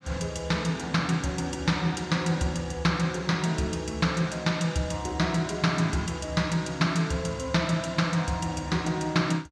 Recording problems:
none

